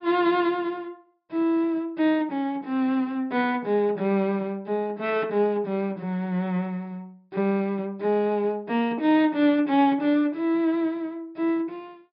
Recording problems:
treble cut off; nothing above 5.5 kHz

